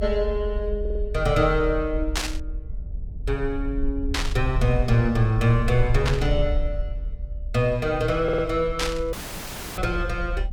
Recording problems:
low-frequency rumble; below 58 Hz, strongest tone 40 Hz, SNR 6 dB
audio stuttering; at 1 s and at 8 s
burst of static; 4 times, first at 2 s; peak +3 dB vs average level
audio cutting out; at 9 s for 0.5 s

